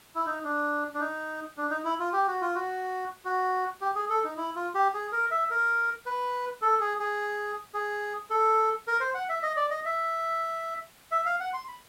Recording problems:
background hiss; slope -2 dB per octave, SNR 26 dB

